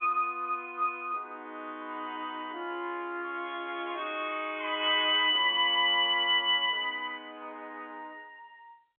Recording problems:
telephone audio; 260 Hz to 3.7 kHz, G.711

